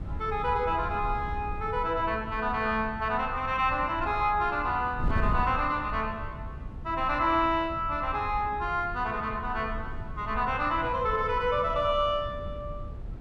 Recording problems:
wind on the microphone; below 120 Hz, SNR 11 dB

